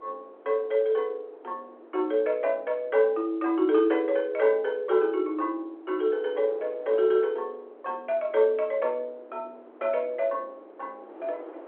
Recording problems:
phone line; 280 Hz to 3.6 kHz, G.711
wind on the microphone; below 700 Hz, SNR 22 dB

